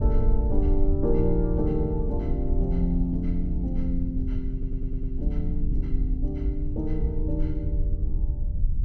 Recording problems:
low-frequency rumble; below 62 Hz, SNR -1 dB
audio stuttering; at 4.5 s

